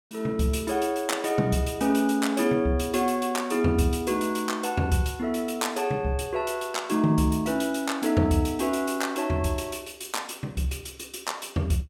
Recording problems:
none

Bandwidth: 17 kHz